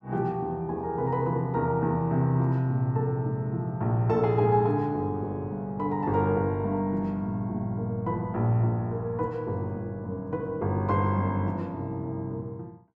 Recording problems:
none

